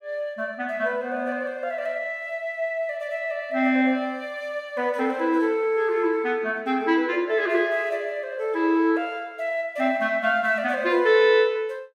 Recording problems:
none

